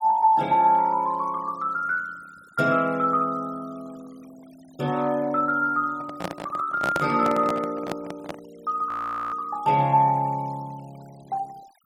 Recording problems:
denoising artefacts; signal-to-artefact ratio 27 dB
microphone handling noise; from 6 to 8.5 s; peak 0 dB vs average level
audio freezing; at 9 s

